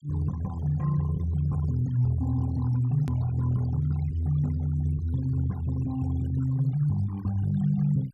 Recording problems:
noise reduction artefacts; signal-to-artefact ratio 22 dB
edit click; at 3 s

